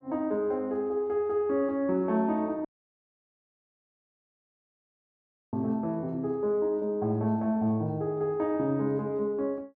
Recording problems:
audio cutting out; at 2.5 s for 3 s

